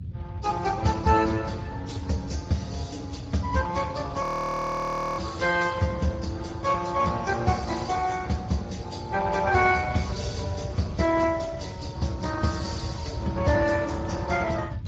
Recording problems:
lossy compression; Vorbis, then Speex, log-spectral distance 3 dB
low-frequency rumble; below 140 Hz, SNR 10 dB
frozen audio; at 4 s for 1 s

